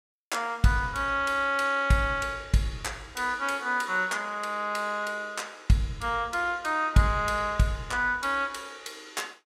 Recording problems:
none

